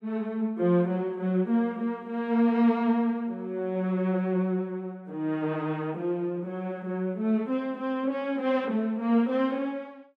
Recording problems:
none

